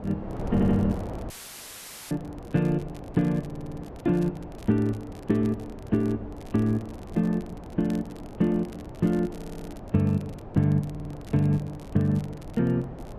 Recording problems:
wind noise; below 510 Hz, SNR 13 dB
crackle; vinyl, SNR 28 dB
stutter; 4 times, first at 0.5 s
audio cutting out; at 1.5 s for 1 s

